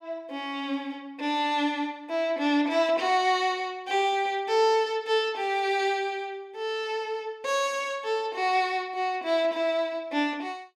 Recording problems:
none

